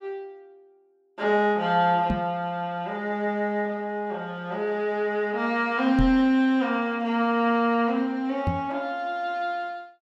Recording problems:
knock on the microphone; at 2 s, at 6 s and at 8.5 s; peak +2 dB vs average level

